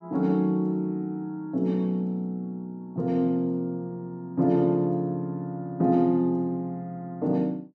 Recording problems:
none

